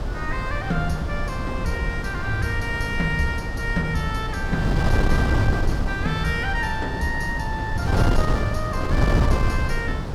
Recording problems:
wind on the microphone; below 210 Hz, SNR -2 dB

